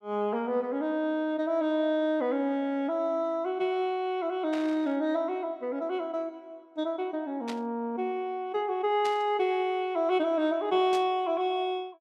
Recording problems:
burst of static; 4 times, first at 4.5 s; peak -7 dB vs average level

